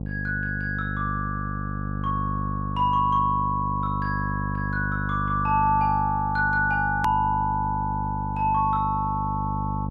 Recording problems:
electrical hum; 50 Hz, harmonics up to 750 Hz, SNR 5 dB
hard cut with a click; at 7 s

